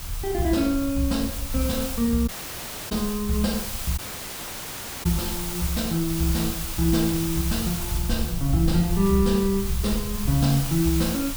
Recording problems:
hiss; slope 0 dB per octave, SNR 7 dB
low-frequency rumble; below 80 Hz, SNR 10 dB
dropout; at 2.5 s for 0.5 s and at 4 s for 1 s

